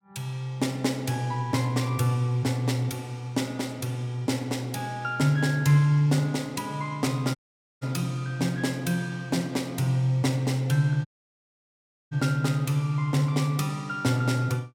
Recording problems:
audio cutting out; at 7.5 s and at 11 s for 1 s

